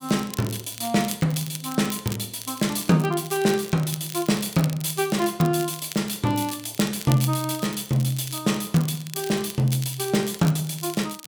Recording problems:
crackling; vinyl, SNR 13 dB

